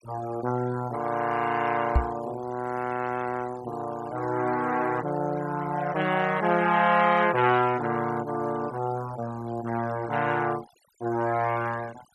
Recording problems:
noise reduction artefacts; signal-to-artefact ratio 18 dB
microphone thump; at 2 s; peak +7 dB vs average level

